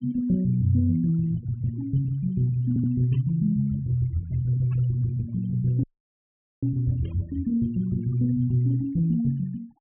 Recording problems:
low-pass filter; nothing above 3.2 kHz
denoising artefacts; signal-to-artefact ratio 24 dB
audio stuttering; at 2.5 s
static burst; at 3 s, at 4.5 s and at 7 s; peak -22 dB vs average level
audio cutting out; at 6 s for 1 s

